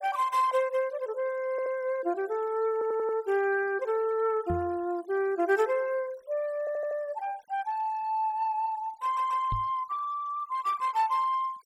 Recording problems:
denoising artefacts; signal-to-artefact ratio 25 dB
stutter; 4 times, first at 1.5 s
microphone bump; at 4.5 s and at 9.5 s; peak -1 dB vs average level

